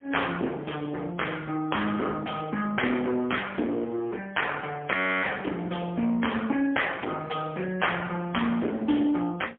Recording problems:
phone line; 190 Hz to 3.4 kHz, AMR-NB, then MP3
distortion; hard clipping, signal-to-distortion ratio 11 dB
audio freezing; at 5 s

